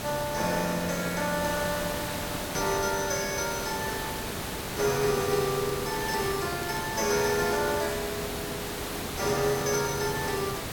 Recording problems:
background hiss; slope -4 dB per octave, SNR 4 dB
crackle; vinyl, SNR 27 dB

